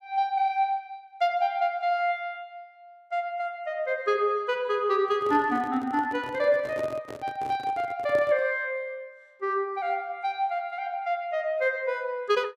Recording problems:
handling noise; from 5 to 8.5 s; peak -7 dB vs average level

